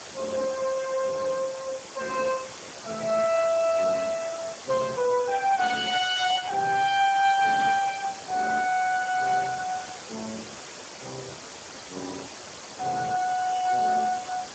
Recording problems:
codec artefacts; Speex, log-spectral distance 14 dB, nothing above 7.3 kHz
background hiss; slope -3 dB per octave, SNR 14 dB

